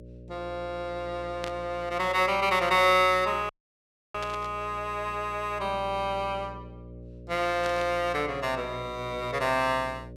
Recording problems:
hum; 60 Hz, harmonics up to 600 Hz, SNR 17 dB
static burst; at 1.5 s, at 4 s and at 7.5 s; peak -5 dB vs average level
audio cutting out; at 3.5 s for 0.5 s

